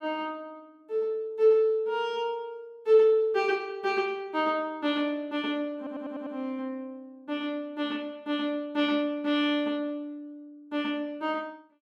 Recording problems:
stutter; at 6 s

